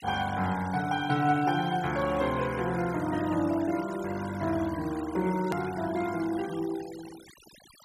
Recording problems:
denoising artefacts; signal-to-artefact ratio 16 dB
hard cut with a click; at 5.5 s

